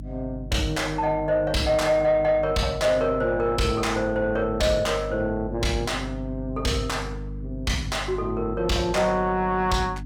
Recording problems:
distortion; soft clipping, signal-to-distortion ratio 8 dB
hum; 50 Hz, harmonics up to 300 Hz, SNR 12 dB

